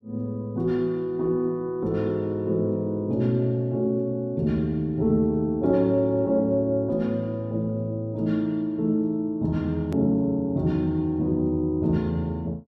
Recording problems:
edit click; at 10 s

